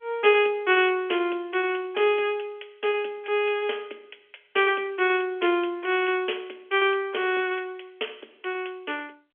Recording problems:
phone line; 320 Hz to 3.4 kHz, G.711

